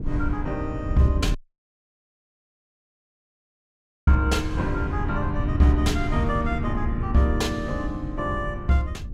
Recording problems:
wind noise; below 120 Hz, SNR 4 dB
audio cutting out; at 1.5 s for 2.5 s

